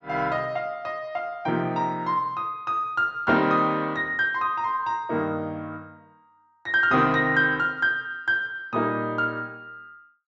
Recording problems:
low-pass filter; nothing above 8 kHz

